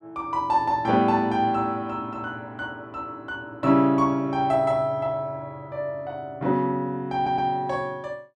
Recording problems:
audio stuttering; at 7 s

